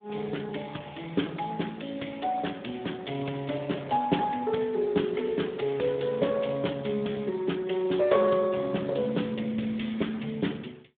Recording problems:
phone line; 150 Hz to 3.7 kHz, Speex

